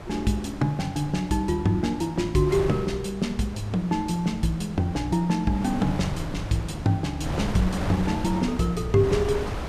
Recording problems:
wind noise; below 670 Hz, SNR 9 dB

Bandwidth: 14.5 kHz